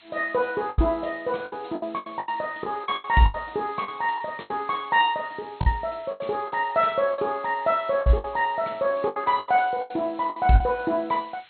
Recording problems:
lossy compression; MP2, log-spectral distance 12 dB, nothing above 3.9 kHz
hiss; SNR 27 dB
lost packets; 12% of the sound replaced, filled with the last packet

